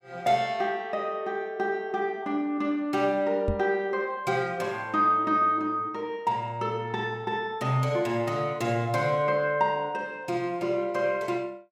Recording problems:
knock on the microphone; at 3.5 s; peak +1 dB vs average level

